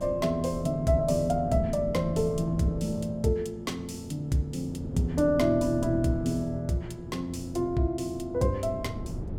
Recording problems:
hum; 60 Hz, harmonics up to 1.3 kHz, SNR 20 dB
wind noise; below 240 Hz, SNR 11 dB

